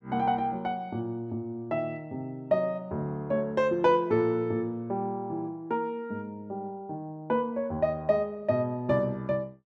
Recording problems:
none

